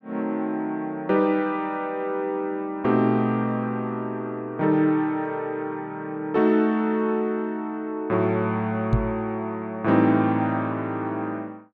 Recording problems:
microphone bump; at 9 s; peak +6 dB vs average level

